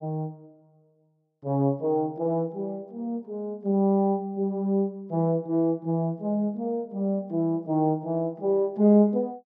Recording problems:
none

